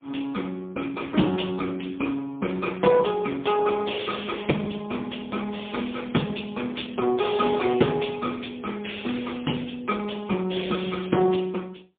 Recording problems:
telephone audio; 150 Hz to 3.5 kHz, AMR-NB, then MP3

